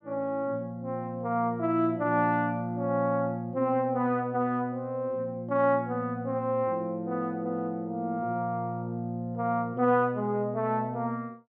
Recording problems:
none

